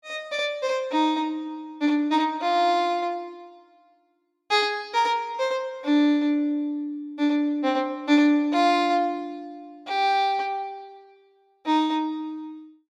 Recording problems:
none

